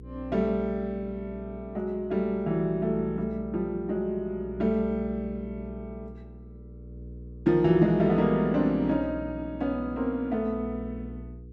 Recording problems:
mains hum; 60 Hz, harmonics up to 480 Hz, SNR 15 dB

